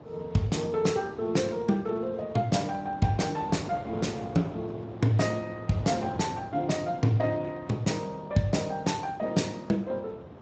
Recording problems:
codec artefacts; Speex, log-spectral distance 4 dB, nothing above 7.8 kHz
wind noise; below 690 Hz, SNR 14 dB

